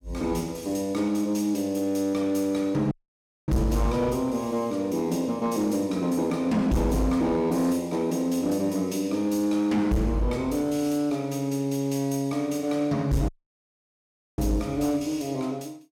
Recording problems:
distortion; hard clipping, uneven, signal-to-distortion ratio 12 dB
dropout; at 3 s for 0.5 s and at 13 s for 1 s

